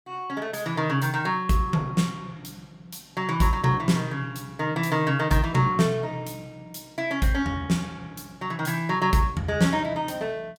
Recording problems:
none

